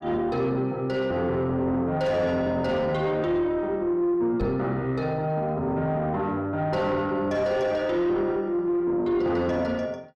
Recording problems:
distortion; soft clipping, signal-to-distortion ratio 10 dB
knock on the microphone; at 4.5 s; peak 0 dB vs average level

